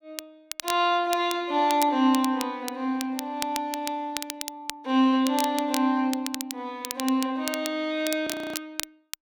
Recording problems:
crackling; vinyl, SNR 10 dB
audio freezing; at 8.5 s

